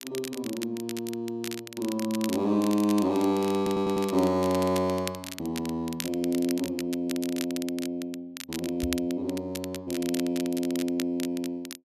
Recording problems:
crackling; vinyl, SNR 11 dB
stutter; at 3.5 s
microphone bump; at 9 s; peak -2 dB vs average level

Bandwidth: 14 kHz